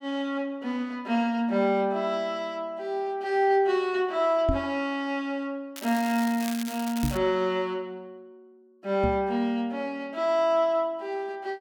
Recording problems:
microphone bump; at 4.5 s, at 7 s and at 9 s; peak +3 dB vs average level
crackle; from 6 to 7 s; loose cable, SNR 12 dB

